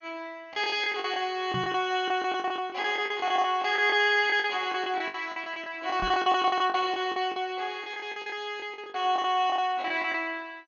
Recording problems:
lossy compression; MP2, log-spectral distance 2 dB, nothing above 6.7 kHz
packet loss; 16% of the sound replaced, filled with the last packet
microphone thump; at 1.5 s and at 6 s; peak -5 dB vs average level

